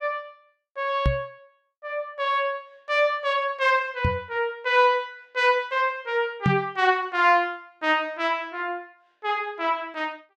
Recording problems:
microphone bump; at 1 s, at 4 s and at 6.5 s; peak +5 dB vs average level

